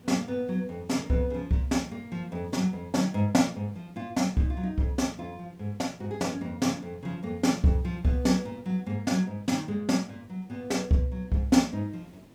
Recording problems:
hiss; SNR 26 dB

